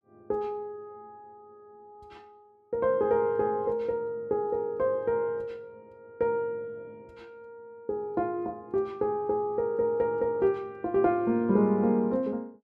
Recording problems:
none

